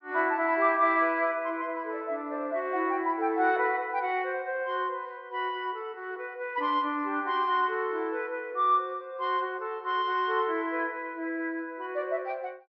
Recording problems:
treble cut off; nothing above 5.5 kHz

